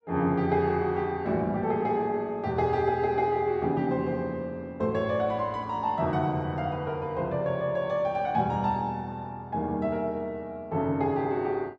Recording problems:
none

